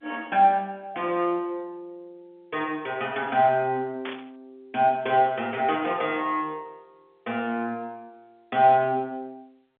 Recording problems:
telephone audio; 190 Hz to 3.8 kHz, G.711
burst of static; at 4 s; peak -7 dB vs average level

